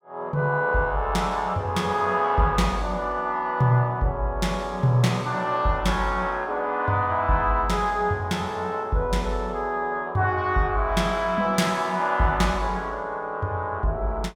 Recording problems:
none

